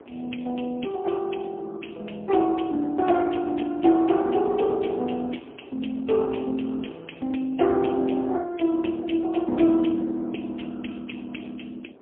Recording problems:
phone line; 220 Hz to 3.3 kHz, AMR-NB, then MP3
wind noise; below 650 Hz, SNR 23 dB

